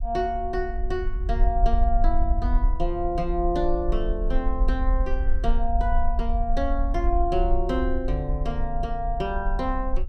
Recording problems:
rumble; below 48 Hz, SNR 0 dB

